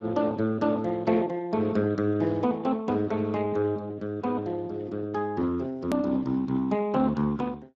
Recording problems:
lossy compression; Speex, log-spectral distance 2 dB, nothing above 13.1 kHz
edit click; at 6 s

